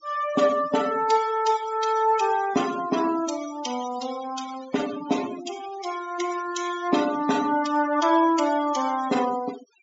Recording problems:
low-pass filter; nothing above 7.4 kHz
noise reduction artefacts; signal-to-artefact ratio 12 dB

